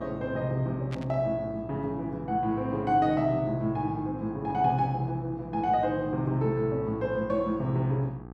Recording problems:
hum; 60 Hz, harmonics up to 1.6 kHz, SNR 16 dB
burst of static; at 1 s; peak -9 dB vs average level

